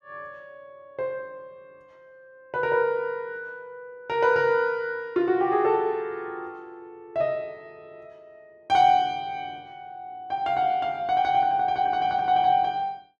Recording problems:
none

